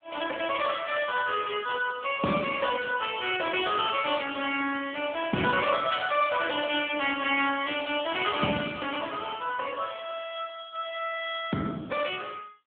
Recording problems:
phone line; 150 Hz to 3.4 kHz, AMR-NB

